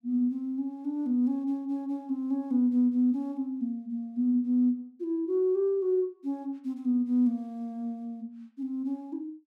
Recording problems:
none

